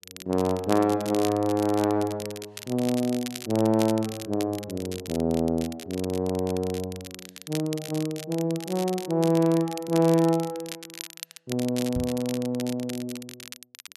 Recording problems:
crackle; vinyl, SNR 14 dB
knock on the microphone; at 12 s; peak -2 dB vs average level

